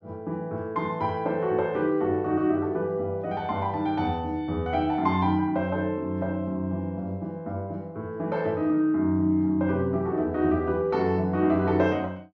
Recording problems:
treble missing; nothing above 8 kHz

